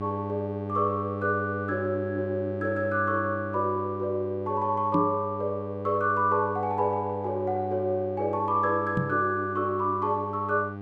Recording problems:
electrical hum; 50 Hz, harmonics up to 1.6 kHz, SNR 9 dB
knock on the microphone; at 5 s and at 9 s; peak +5 dB vs average level

